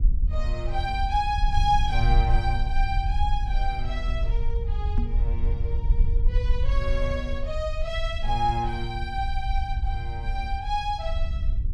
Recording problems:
rumble; below 56 Hz, SNR -2 dB
knock on the microphone; at 5 s; peak 0 dB vs average level

